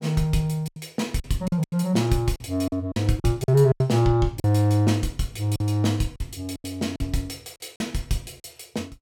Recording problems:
packet loss; 10% of the sound replaced, filled with silence

